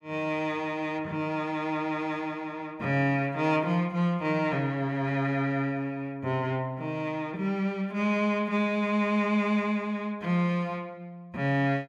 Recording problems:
none

